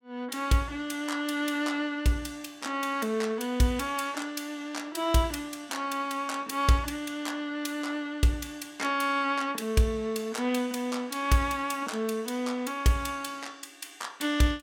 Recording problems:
none

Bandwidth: 17 kHz